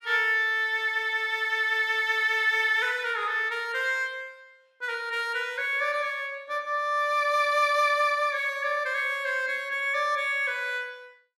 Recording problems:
none

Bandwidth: 14 kHz